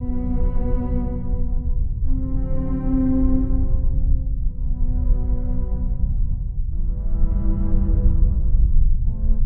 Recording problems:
low-frequency rumble; below 60 Hz, SNR -4 dB

